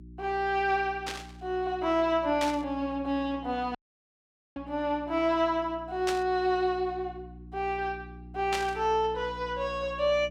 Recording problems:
hum; 60 Hz, harmonics up to 360 Hz, SNR 18 dB
static burst; 4 times, first at 1 s; peak -1 dB vs average level
dropout; at 4 s for 1 s

